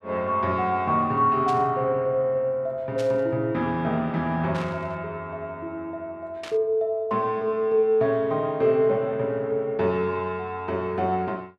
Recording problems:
static burst; 4 times, first at 1.5 s; peak -9 dB vs average level

